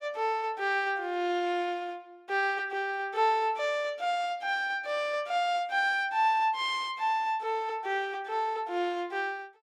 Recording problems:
none

